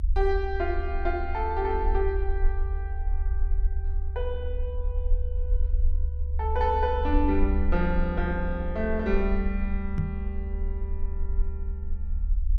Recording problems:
low-frequency rumble; below 70 Hz, SNR 1 dB
microphone bump; at 10 s; peak +6 dB vs average level

